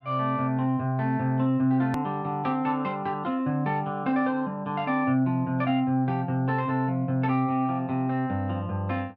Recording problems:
click at an edit; at 2 s

